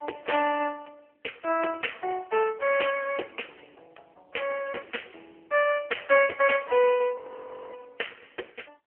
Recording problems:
phone line; 340 Hz to 3 kHz, AMR-NB
audio freezing; at 7 s for 0.5 s

